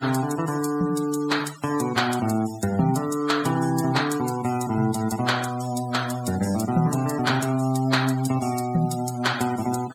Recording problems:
noise reduction artefacts; signal-to-artefact ratio 15 dB

